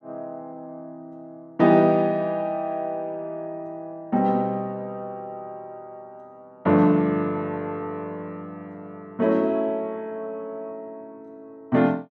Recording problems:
none

